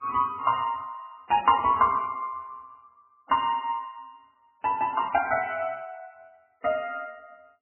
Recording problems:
codec artefacts; MP3, log-spectral distance 3 dB, nothing above 2.5 kHz

